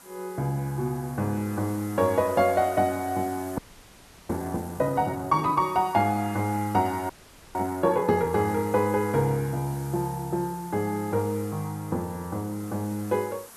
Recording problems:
hiss; SNR 19 dB
audio freezing; at 3.5 s for 0.5 s and at 7 s

